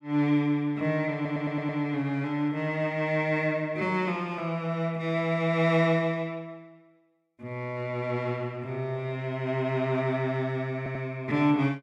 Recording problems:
audio stuttering; at 1 s and at 11 s

